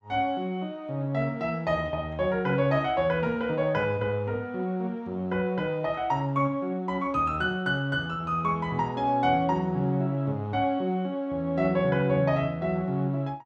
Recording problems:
none

